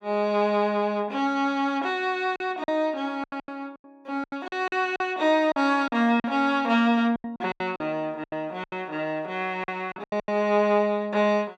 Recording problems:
packet loss; 11% of the sound replaced, filled with silence

